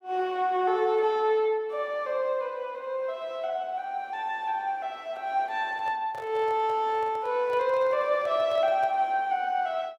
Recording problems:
microphone handling noise; from 5.5 to 9 s; peak -12 dB vs average level

